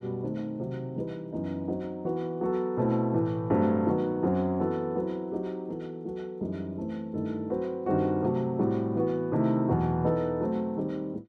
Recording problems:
none

